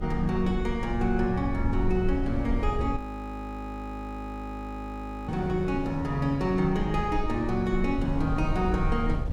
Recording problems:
hum; 50 Hz, harmonics up to 300 Hz, SNR 20 dB
low-frequency rumble; below 64 Hz, SNR 7 dB
wind noise; below 260 Hz, SNR 9 dB
audio freezing; at 3 s for 2.5 s

